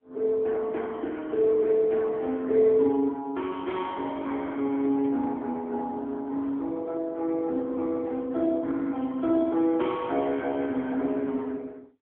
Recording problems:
telephone audio; 190 Hz to 3.5 kHz, AMR-NB

